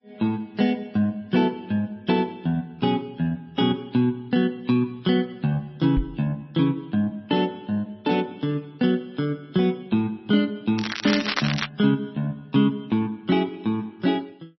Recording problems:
codec artefacts; MP3, then MP3, log-spectral distance 2 dB, nothing above 5.5 kHz
microphone thump; at 6 s; peak +1 dB vs average level
crackle; at 11 s; loose cable, SNR 4 dB

